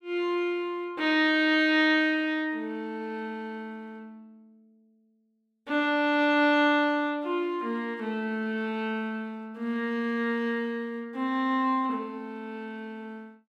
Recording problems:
none

